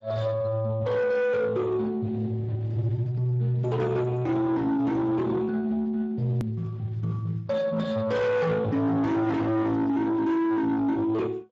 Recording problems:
codec artefacts; Speex, log-spectral distance 2 dB, nothing above 13.1 kHz
distorted audio; soft clipping, signal-to-distortion ratio 7 dB
hard cut with a click; at 6.5 s

